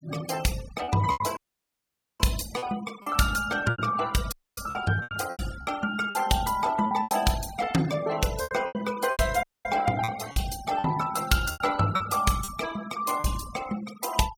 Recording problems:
denoising artefacts; signal-to-artefact ratio 15 dB
packet loss; 10% of the sound replaced, filled with repeated pitch periods
audio cutting out; at 1.5 s for 1 s, at 4.5 s and at 9.5 s

